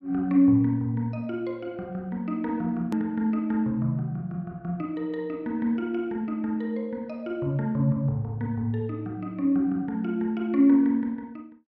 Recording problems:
hard cut with a click; at 3 s

